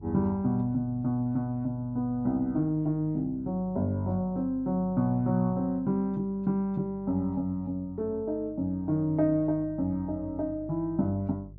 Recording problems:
electrical hum; 50 Hz, harmonics up to 400 Hz, SNR 20 dB

